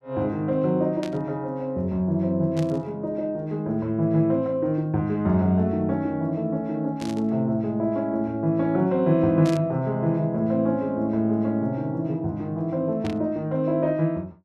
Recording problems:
static burst; 5 times, first at 1 s; peak -9 dB vs average level

